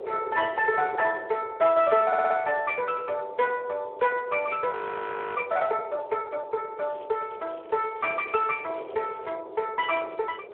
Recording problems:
telephone audio; 370 Hz to 3.5 kHz, Speex
wind noise; below 600 Hz, SNR 14 dB
audio stuttering; at 2 s
audio freezing; at 4.5 s for 0.5 s
crackle; from 7 to 9.5 s; loose cable, SNR 27 dB

